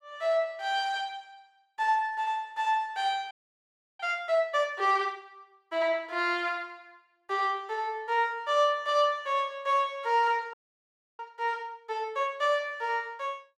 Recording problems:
audio freezing; at 3.5 s for 0.5 s and at 11 s for 0.5 s

